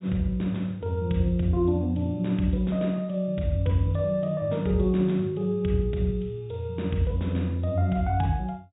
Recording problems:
treble cut off; nothing above 4 kHz

